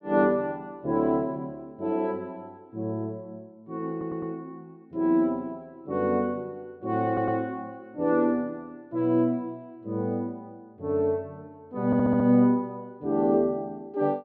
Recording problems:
stutter; at 4 s, at 7 s and at 12 s

